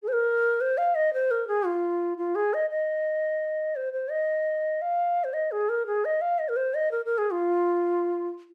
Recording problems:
none

